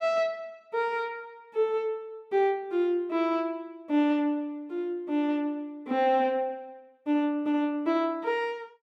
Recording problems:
none

